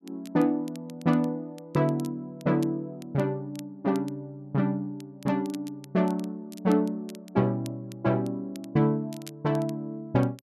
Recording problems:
crackle; vinyl, SNR 24 dB

